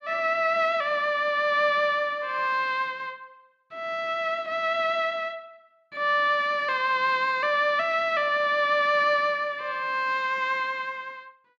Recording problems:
none

